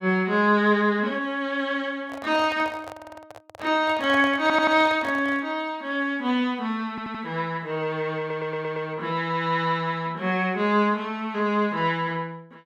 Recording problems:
handling noise; from 2 to 5.5 s; peak -6 dB vs average level
stutter; 4 times, first at 3 s

